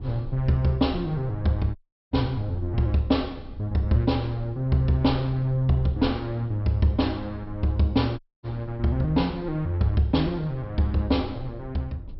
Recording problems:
treble missing; nothing above 5.5 kHz
rumble; below 88 Hz, SNR 17 dB
audio cutting out; at 2 s and at 8 s

